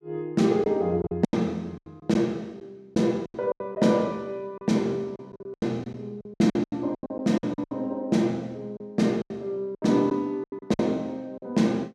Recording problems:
lost packets; 14% of the sound replaced, filled with silence

